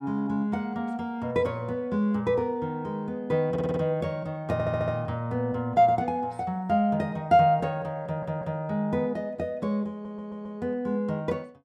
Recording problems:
audio stuttering; 4 times, first at 3.5 s

